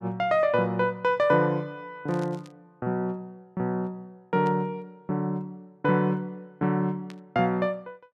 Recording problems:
burst of static; at 2 s, at 4.5 s and at 7 s; peak -15 dB vs average level

